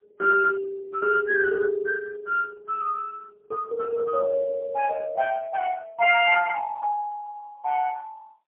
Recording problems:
telephone audio; 130 Hz to 3.1 kHz, AMR-NB, then MP3

